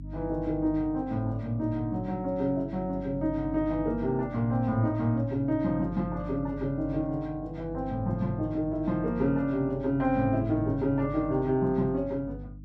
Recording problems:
hum; 50 Hz, harmonics up to 300 Hz, SNR 13 dB

